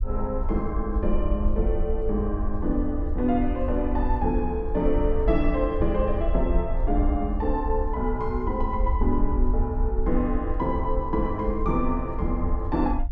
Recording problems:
low-frequency rumble; below 58 Hz, SNR 2 dB

